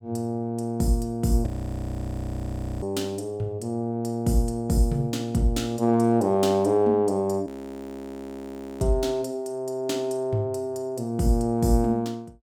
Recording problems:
audio freezing; at 1.5 s for 1.5 s and at 7.5 s for 1.5 s

